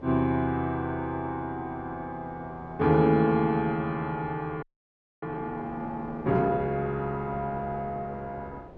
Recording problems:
wind noise; below 650 Hz, SNR 19 dB
audio freezing; at 4.5 s for 0.5 s

